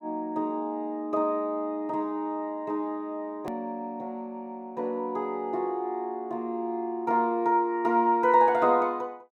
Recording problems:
hard cut with a click; at 3.5 s

